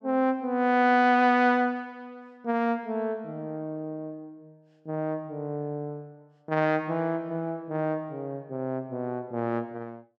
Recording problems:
none

